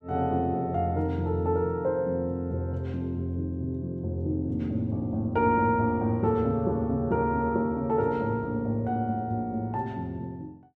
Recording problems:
none

